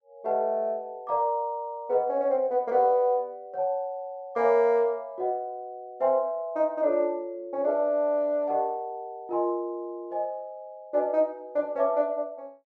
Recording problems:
none

